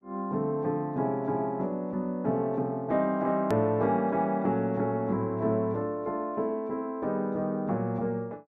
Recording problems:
edit click; at 3.5 s

